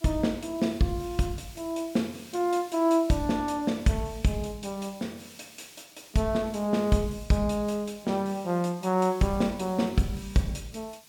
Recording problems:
hiss; SNR 22 dB

